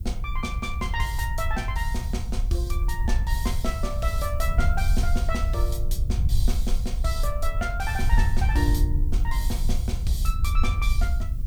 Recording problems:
hiss; slope +1 dB per octave, SNR 24 dB
low-frequency rumble; below 58 Hz, SNR 3 dB
wind noise; below 72 Hz, SNR -3 dB

